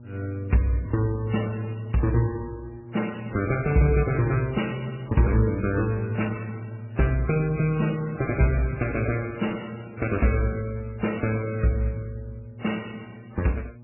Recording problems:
lossy compression; MP3, then AAC, log-spectral distance 4 dB, nothing above 2.9 kHz
hum; 60 Hz, harmonics up to 600 Hz, SNR 20 dB

